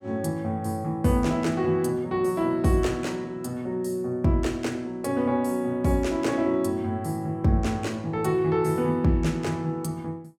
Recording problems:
none

